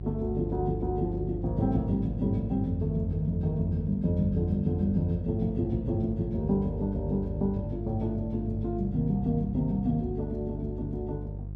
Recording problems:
electrical hum; 50 Hz, harmonics up to 350 Hz, SNR 7 dB

